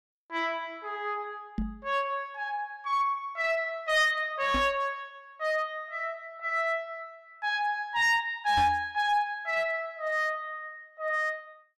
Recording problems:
distortion; hard clipping, uneven, signal-to-distortion ratio 11 dB
knock on the microphone; at 1.5 s, at 4.5 s and at 8.5 s; peak 0 dB vs average level

